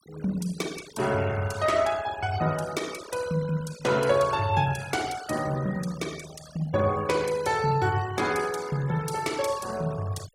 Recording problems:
denoising artefacts; signal-to-artefact ratio 15 dB

